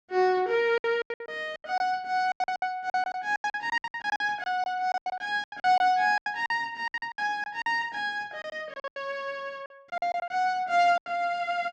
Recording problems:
packet loss; 17% of the sound replaced, filled with silence

